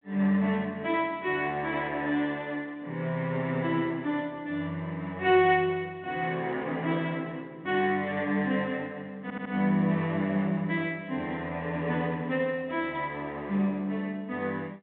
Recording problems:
telephone audio; 150 Hz to 3.6 kHz, G.726
audio stuttering; at 9 s

